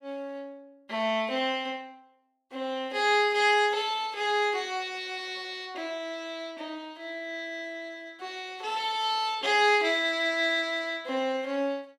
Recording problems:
none

